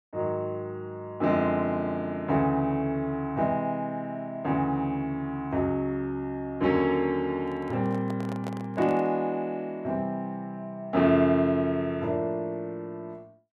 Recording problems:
handling noise; from 7.5 to 9 s; peak -7 dB vs average level

